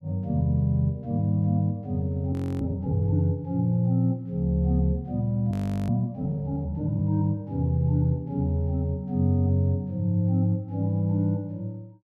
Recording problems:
frozen audio; at 2.5 s and at 5.5 s

